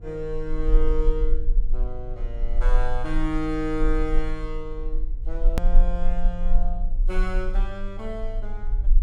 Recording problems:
electrical hum; 50 Hz, harmonics up to 700 Hz, SNR 13 dB
rumble; below 34 Hz, strongest tone 20 Hz, SNR -4 dB
click at an edit; at 5.5 s

